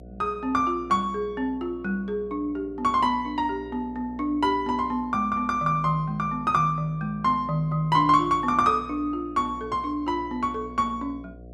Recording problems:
hum; 60 Hz, harmonics up to 720 Hz, SNR 21 dB

